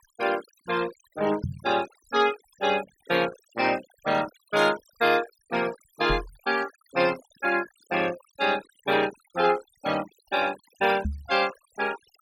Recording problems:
noise reduction artefacts; signal-to-artefact ratio 14 dB
knock on the microphone; at 1.5 s, at 6 s and at 11 s; peak 0 dB vs average level

